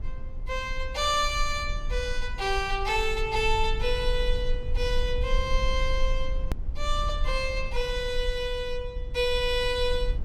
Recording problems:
low-frequency rumble; below 46 Hz, strongest tone 24 Hz, SNR 5 dB
click at an edit; at 6.5 s

